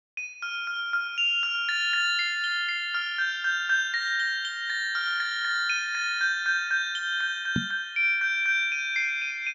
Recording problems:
treble cut off; nothing above 7.2 kHz
knock on the microphone; at 7.5 s; peak +1 dB vs average level

